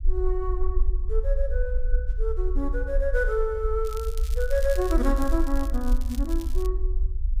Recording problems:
low-frequency rumble; below 50 Hz, SNR -1 dB
crackling; from 4 to 6.5 s; loose cable, SNR 16 dB

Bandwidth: 15.5 kHz